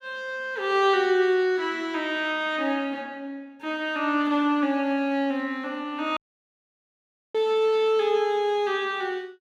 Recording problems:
dropout; at 6 s for 1 s

